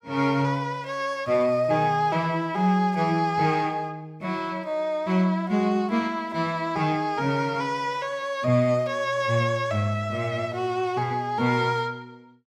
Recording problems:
none

